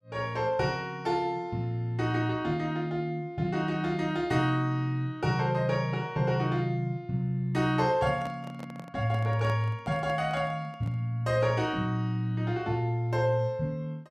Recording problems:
microphone handling noise; from 8 to 11 s; peak -9 dB vs average level

